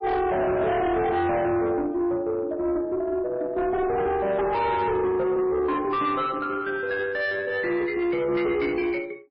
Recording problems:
codec artefacts; MP3, log-spectral distance 2 dB, nothing above 5.3 kHz
distorted audio; soft clipping, signal-to-distortion ratio 7 dB

